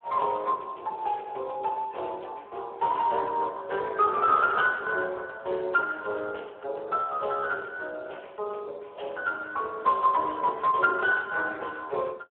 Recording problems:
telephone audio; 340 Hz to 3.3 kHz, Speex

